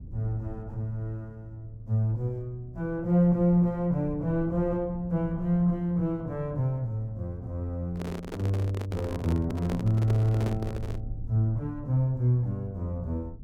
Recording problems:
rumble; below 100 Hz, SNR 16 dB
handling noise; from 8 to 11 s; peak -4 dB vs average level

